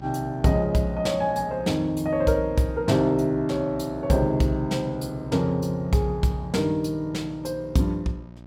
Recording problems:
hum; 60 Hz, harmonics up to 1.6 kHz, SNR 18 dB

